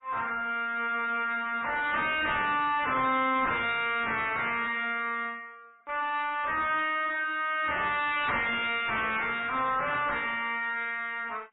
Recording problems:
codec artefacts; MP3, then AAC, log-spectral distance 3 dB, nothing above 3.8 kHz
distortion; soft clipping, signal-to-distortion ratio 6 dB

